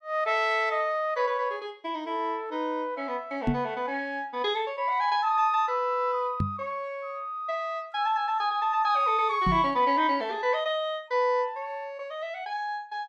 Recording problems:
microphone thump; at 3.5 s, at 6.5 s and at 9.5 s; peak +5 dB vs average level

